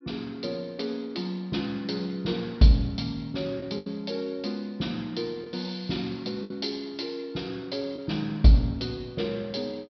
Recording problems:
low-pass filter; nothing above 5.5 kHz
packet loss; 2% of the sound replaced, filled with the last packet

